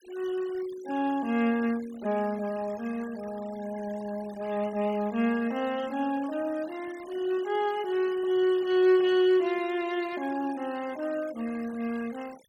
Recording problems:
denoising artefacts; signal-to-artefact ratio 20 dB

